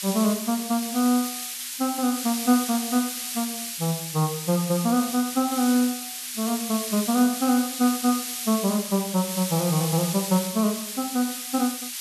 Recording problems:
hiss; SNR 5 dB

